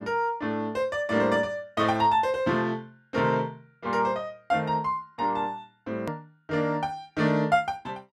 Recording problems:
click at an edit; at 6 s

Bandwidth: 14 kHz